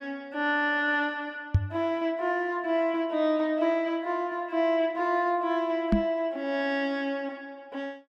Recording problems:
microphone thump; at 1.5 s and at 6 s; peak +9 dB vs average level

